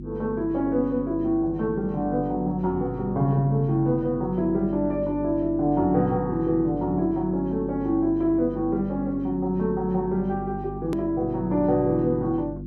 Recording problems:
hum; 50 Hz, harmonics up to 350 Hz, SNR 11 dB
hard cut with a click; at 11 s

